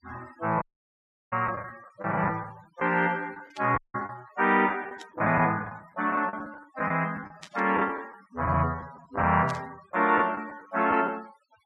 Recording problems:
denoising artefacts; signal-to-artefact ratio 22 dB
packet loss; 10% of the sound replaced, filled with the last packet
dropout; at 0.5 s for 0.5 s and at 4 s
burst of static; 4 times, first at 3.5 s; peak -11 dB vs average level

